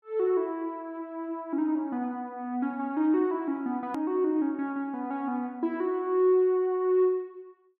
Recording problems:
edit click; at 4 s

